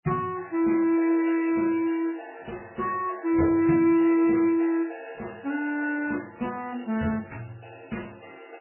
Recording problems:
lossy compression; MP3, log-spectral distance 6 dB, nothing above 2.7 kHz

